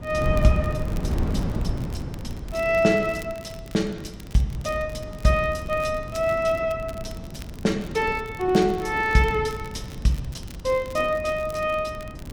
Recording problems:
wind noise; below 200 Hz, SNR 9 dB
crackle; vinyl, SNR 24 dB

